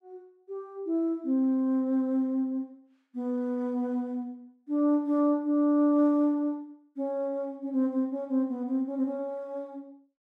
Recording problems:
none

